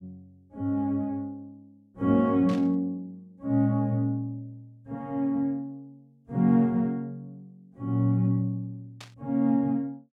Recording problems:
static burst; at 2.5 s and at 9 s; peak -13 dB vs average level

